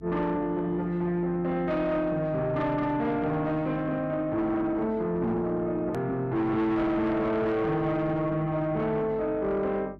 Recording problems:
distortion; soft clipping, signal-to-distortion ratio 10 dB
hum; 50 Hz, harmonics up to 350 Hz, SNR 21 dB
hard cut with a click; at 6 s

